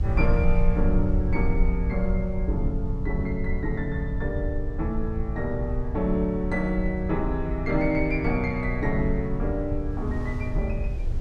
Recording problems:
rumble; below 70 Hz, SNR 2 dB
wind noise; below 440 Hz, SNR 21 dB

